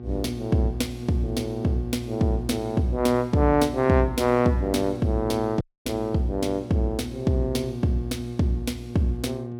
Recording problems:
electrical hum; 60 Hz, harmonics up to 840 Hz, SNR 11 dB
audio cutting out; at 5.5 s

